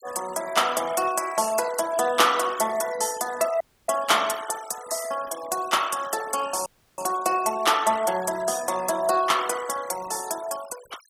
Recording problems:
noise reduction artefacts; signal-to-artefact ratio 16 dB
dropout; at 3.5 s and at 6.5 s

